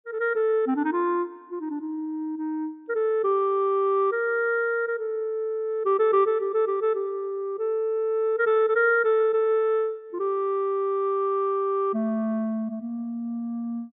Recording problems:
treble cut off; nothing above 4 kHz

